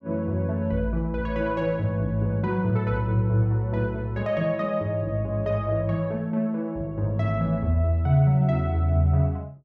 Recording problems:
none

